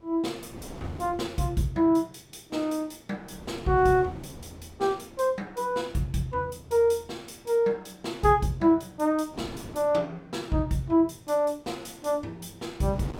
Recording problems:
wind noise; below 510 Hz, SNR 20 dB

